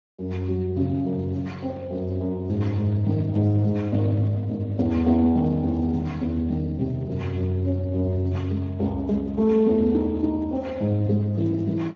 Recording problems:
lossy compression; AAC, then Speex, log-spectral distance 2 dB

